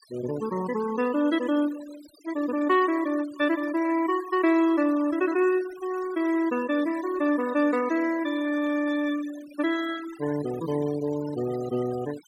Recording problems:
noise reduction artefacts; signal-to-artefact ratio 17 dB

